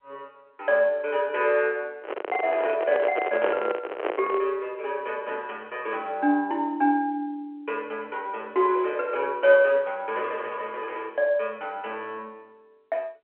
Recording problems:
telephone audio; 320 Hz to 3.2 kHz, G.711
handling noise; from 2 to 4.5 s; peak +3 dB vs average level

